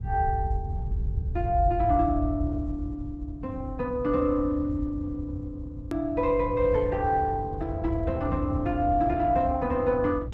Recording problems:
lossy compression; Opus, log-spectral distance 2 dB
rumble; below 94 Hz, SNR 4 dB
click at an edit; at 6 s

